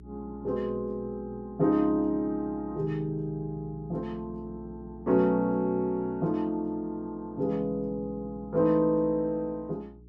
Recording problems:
hum; 60 Hz, harmonics up to 420 Hz, SNR 21 dB

